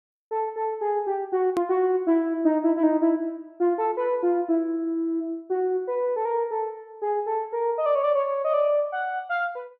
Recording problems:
hard cut with a click; at 1.5 s

